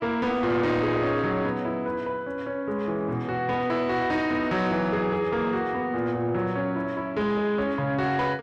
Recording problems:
distortion; soft clipping, signal-to-distortion ratio 10 dB

